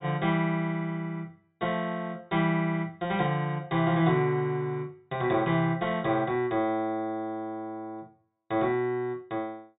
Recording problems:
treble missing; nothing above 4 kHz

